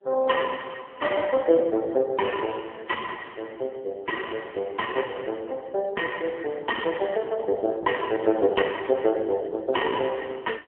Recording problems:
phone line; 240 Hz to 3 kHz, AMR-NB

